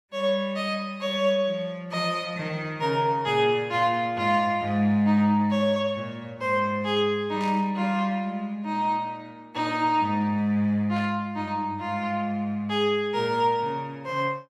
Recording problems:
burst of static; at 7.5 s and at 11 s; peak -13 dB vs average level

